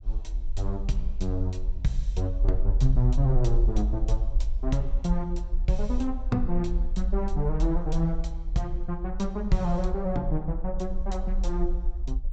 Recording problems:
treble missing; nothing above 8 kHz
low-frequency rumble; below 46 Hz, SNR 1 dB

